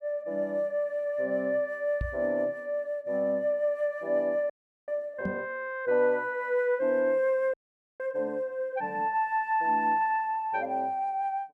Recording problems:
microphone thump; at 2 s and at 5.5 s; peak -1 dB vs average level
frozen audio; at 4.5 s and at 7.5 s

